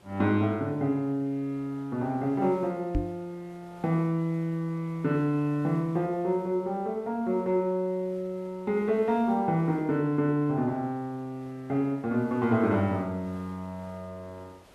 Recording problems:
hiss; slope -6 dB per octave, SNR 27 dB
knock on the microphone; at 3 s; peak +3 dB vs average level

